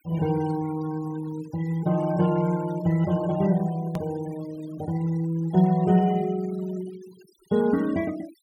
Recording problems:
noise reduction artefacts; signal-to-artefact ratio 20 dB
edit click; at 4 s

